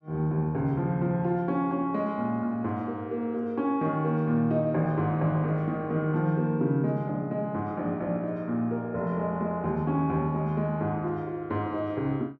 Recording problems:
none

